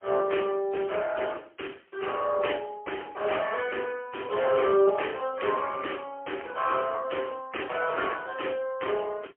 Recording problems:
telephone audio; 300 Hz to 3.1 kHz, AMR-NB, then MP3

